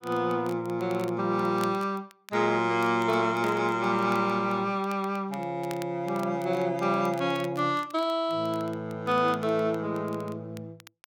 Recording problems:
crackle; vinyl, SNR 23 dB

